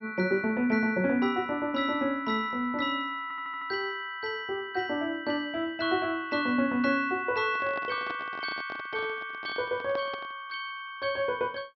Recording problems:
treble missing; nothing above 5.5 kHz
stutter; at 3 s
microphone handling noise; from 7.5 to 10 s; peak -7 dB vs average level

